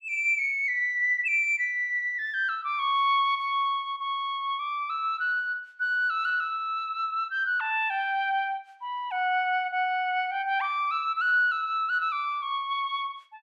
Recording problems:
none

